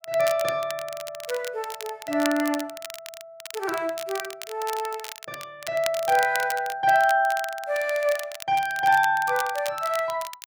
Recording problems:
crackle; vinyl, SNR 13 dB

